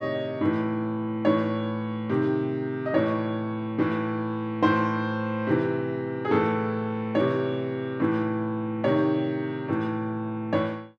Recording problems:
none

